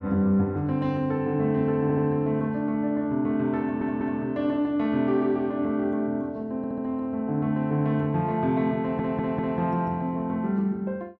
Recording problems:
stutter; 4 times, first at 2 s

